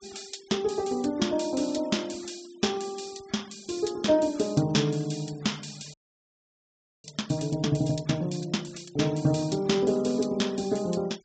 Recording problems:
treble missing; nothing above 8 kHz
noise reduction artefacts; signal-to-artefact ratio 23 dB
frozen audio; at 6 s for 1 s

